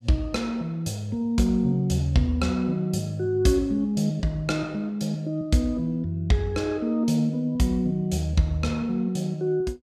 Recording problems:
none

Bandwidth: 14.5 kHz